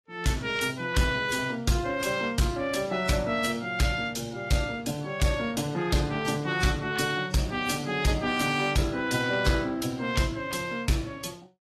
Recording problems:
lossy codec; AAC, log-spectral distance 4 dB, nothing above 15.5 kHz
distorted audio; soft clipping, signal-to-distortion ratio 7 dB

